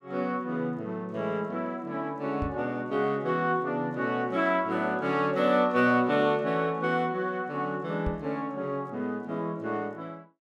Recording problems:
knock on the microphone; at 2.5 s and at 8 s; peak -1 dB vs average level

